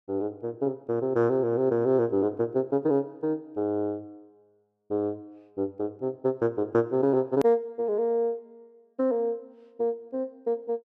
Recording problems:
click at an edit; at 7.5 s

